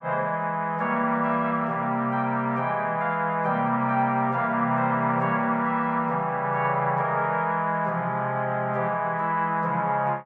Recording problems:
none

